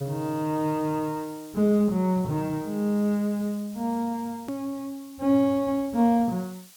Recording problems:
hiss; slope +2 dB per octave, SNR 23 dB
hard cut with a click; at 4.5 s

